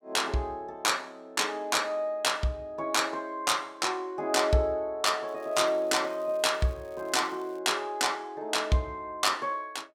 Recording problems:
crackling; from 5.5 to 7.5 s; loose cable, SNR 30 dB

